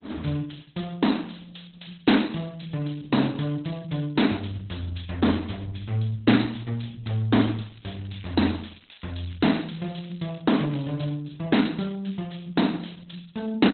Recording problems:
lossy codec; Opus, log-spectral distance 9 dB, nothing above 4.1 kHz
crackle; from 7.5 to 10 s; loose cable, SNR 26 dB

